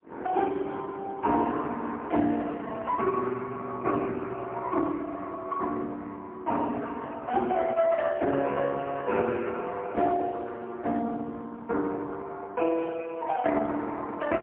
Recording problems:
phone line; 240 Hz to 3.2 kHz, AMR-NB, then MP3

